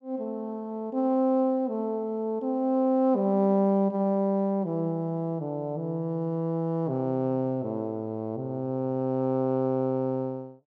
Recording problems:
none

